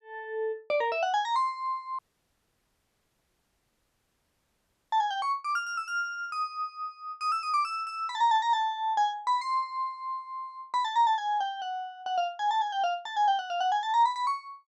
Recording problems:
audio cutting out; at 2 s for 3 s

